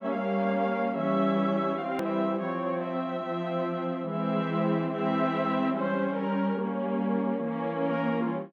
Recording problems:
click at an edit; at 2 s

